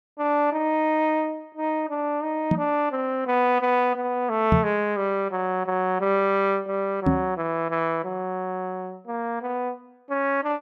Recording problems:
knock on the microphone; at 2.5 s, at 4.5 s and at 7 s; peak +7 dB vs average level

